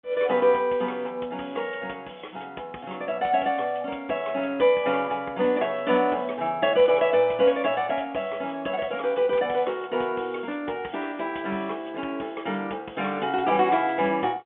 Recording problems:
telephone audio; 300 Hz to 3.4 kHz, G.711

